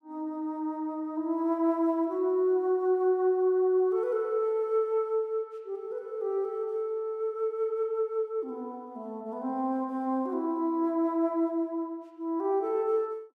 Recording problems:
none

